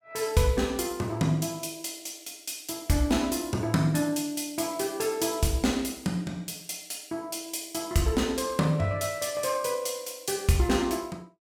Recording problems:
none

